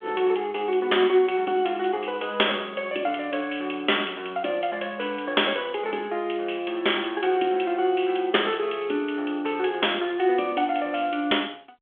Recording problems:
telephone audio; 300 Hz to 3.5 kHz, G.726

